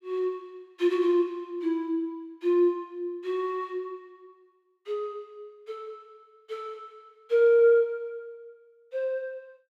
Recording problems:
none

